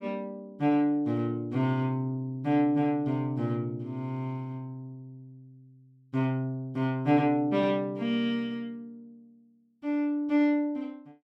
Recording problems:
none

